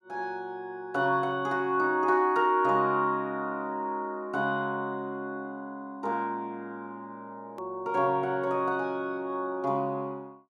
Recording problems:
hard cut with a click; at 7.5 s

